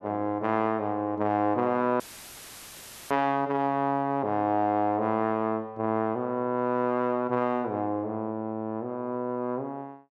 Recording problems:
dropout; at 2 s for 1 s; filled with static

